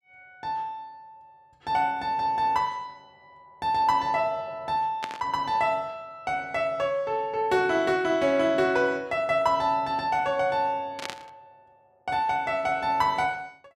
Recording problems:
static burst; at 5 s and at 11 s; peak -3 dB vs average level

